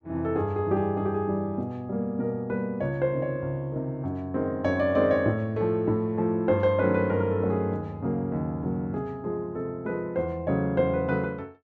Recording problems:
none

